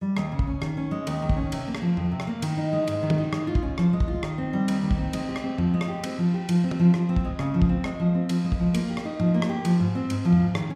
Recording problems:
none

